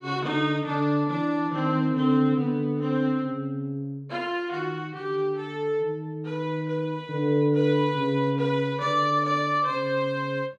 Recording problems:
none

